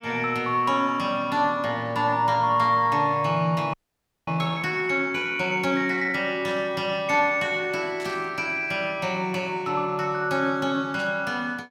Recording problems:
burst of static; 4 times, first at 3.5 s; peak -12 dB vs average level
audio freezing; at 3.5 s for 0.5 s

